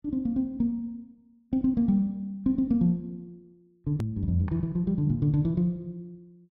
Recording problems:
edit click; at 4 s

